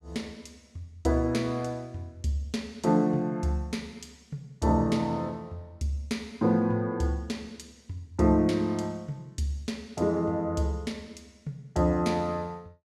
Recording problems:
none

